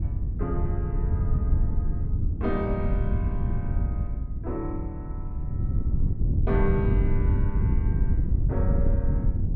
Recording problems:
wind on the microphone; below 100 Hz, SNR -6 dB

